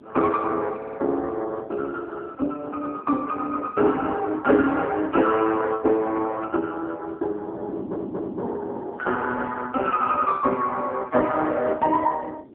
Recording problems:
phone line; 260 Hz to 2.6 kHz, AMR-NB
wind noise; below 410 Hz, SNR 18 dB
stutter; at 1 s and at 7.5 s

